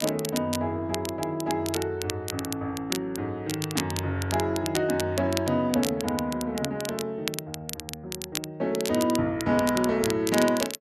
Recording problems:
crackling; vinyl, SNR 8 dB

